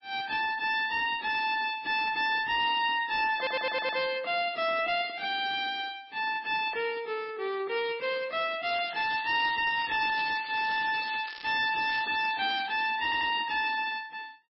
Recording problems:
lossy compression; MP3, log-spectral distance 6 dB, nothing above 4.8 kHz
distorted audio; hard clipping, signal-to-distortion ratio 9 dB
audio stuttering; at 3.5 s and at 13 s
crackle; at 8.5 s and from 9.5 to 13 s; loose cable, SNR 14 dB

